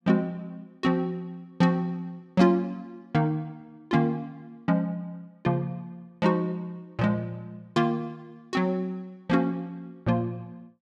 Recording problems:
none

